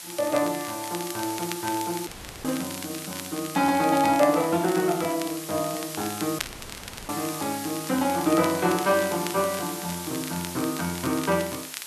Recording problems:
background hiss; slope +1 dB per octave, SNR 9 dB
crackle; vinyl, SNR 14 dB
dropout; at 2 s and at 6.5 s for 0.5 s

